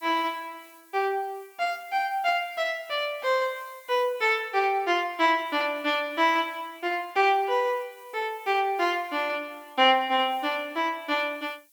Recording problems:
hiss; slope +6 dB per octave, SNR 28 dB

